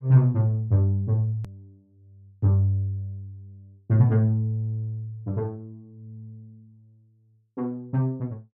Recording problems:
click at an edit; at 1.5 s

